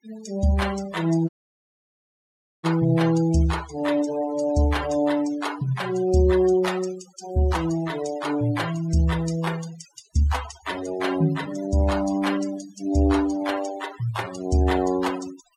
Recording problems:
denoising artefacts; signal-to-artefact ratio 14 dB
dropout; at 1.5 s for 1.5 s

